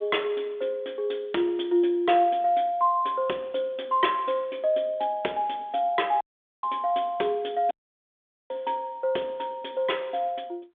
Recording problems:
telephone audio; 260 Hz to 3.6 kHz, G.726
audio cutting out; at 6 s and at 7.5 s for 1 s

